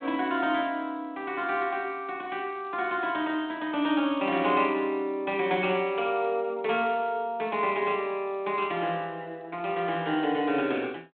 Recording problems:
phone line; 220 Hz to 3.6 kHz, G.726

